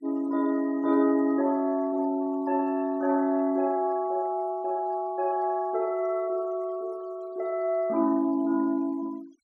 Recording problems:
denoising artefacts; signal-to-artefact ratio 27 dB

